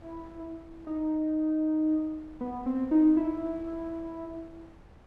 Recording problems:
wind on the microphone; below 500 Hz, SNR 24 dB

